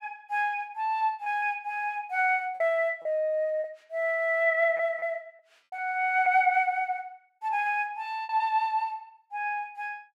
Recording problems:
packet loss; 5% of the sound replaced, filled with repeated pitch periods

